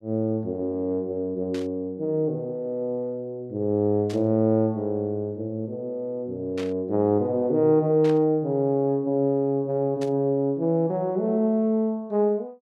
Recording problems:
static burst; 5 times, first at 1.5 s; peak -10 dB vs average level

